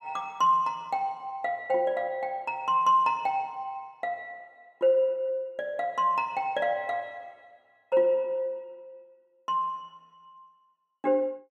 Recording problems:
none

